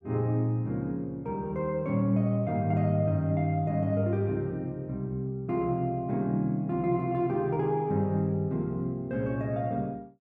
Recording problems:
none

